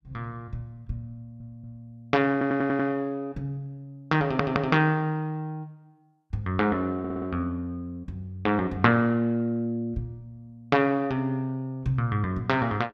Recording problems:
stutter; 4 times, first at 1 s

